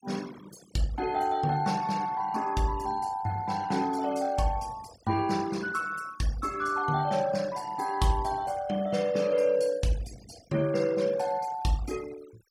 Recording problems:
noise reduction artefacts; signal-to-artefact ratio 19 dB

